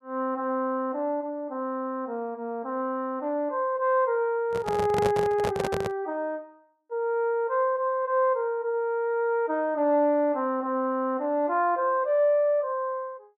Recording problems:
handling noise; from 4.5 to 6 s; peak +2 dB vs average level

